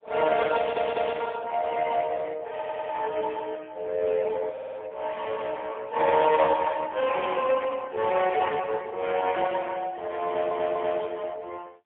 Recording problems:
phone line; 340 Hz to 2.8 kHz, AMR-NB, then MP3
stutter; 4 times, first at 0.5 s

